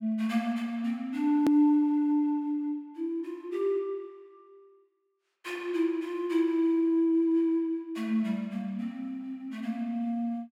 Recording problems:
click at an edit; at 1.5 s

